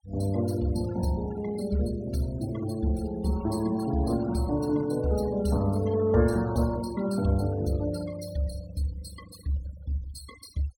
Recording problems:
denoising artefacts; signal-to-artefact ratio 18 dB

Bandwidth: 16.5 kHz